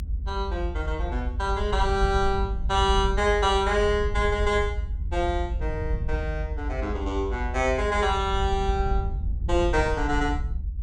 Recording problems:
low-frequency rumble; below 74 Hz, SNR 4 dB

